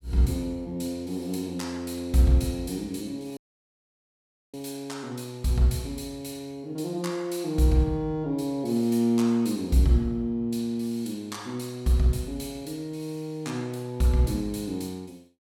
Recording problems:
dropout; at 3.5 s for 1 s

